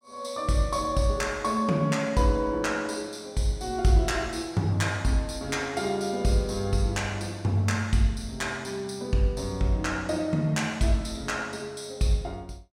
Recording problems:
none

